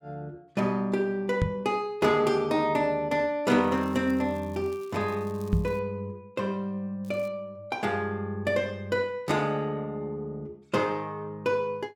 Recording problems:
microphone bump; at 1.5 s and at 5.5 s; peak +6 dB vs average level
crackle; from 3.5 to 6 s and at 7 s; loose cable, SNR 28 dB

